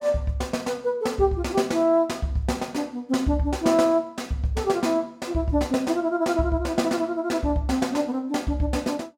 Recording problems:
none

